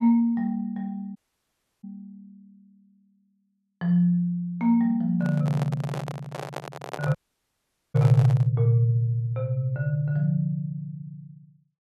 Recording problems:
audio cutting out; at 1 s for 0.5 s and at 7 s for 1 s
microphone handling noise; from 5 to 8.5 s; peak -5 dB vs average level

